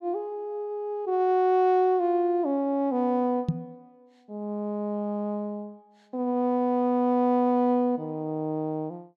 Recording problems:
microphone thump; at 3.5 s; peak +4 dB vs average level

